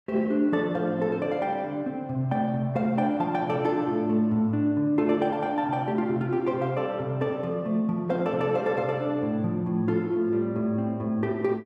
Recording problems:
none

